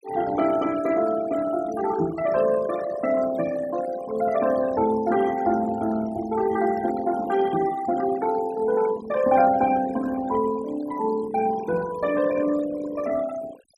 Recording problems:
denoising artefacts; signal-to-artefact ratio 14 dB

